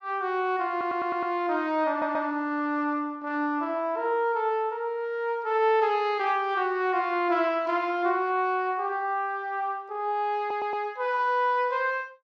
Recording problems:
audio stuttering; at 0.5 s, at 2 s and at 10 s

